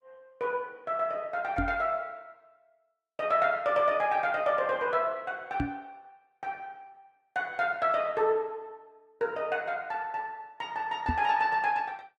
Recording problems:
codec artefacts; Opus, log-spectral distance 2 dB
microphone bump; at 1.5 s, at 5.5 s and at 11 s; peak +2 dB vs average level

